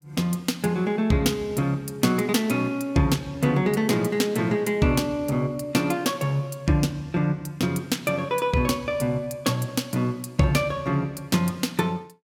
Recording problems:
none

